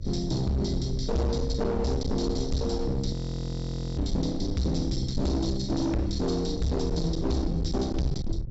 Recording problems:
low-pass filter; nothing above 8 kHz
distortion; hard clipping, uneven, signal-to-distortion ratio 7 dB
electrical hum; 60 Hz, harmonics up to 600 Hz, SNR 25 dB
low-frequency rumble; below 94 Hz, SNR 6 dB
audio freezing; at 3 s for 1 s

